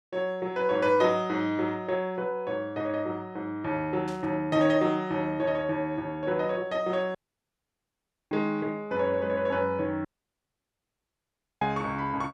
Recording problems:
static burst; at 4 s; peak -14 dB vs average level
dropout; at 7 s for 1 s and at 10 s for 1.5 s

